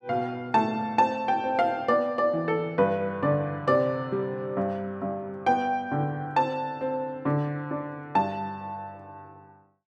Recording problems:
none

